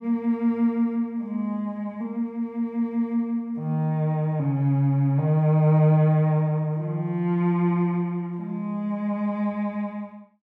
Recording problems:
none

